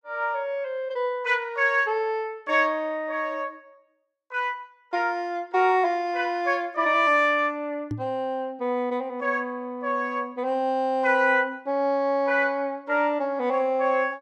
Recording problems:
microphone bump; at 8 s; peak -2 dB vs average level

